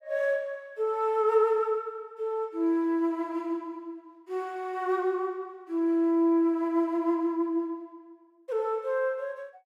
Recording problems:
none

